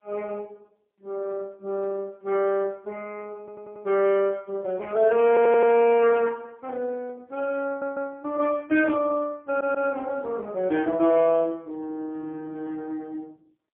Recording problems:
phone line; 240 Hz to 3.3 kHz, AMR-NB, then MP3
stutter; 4 times, first at 3.5 s

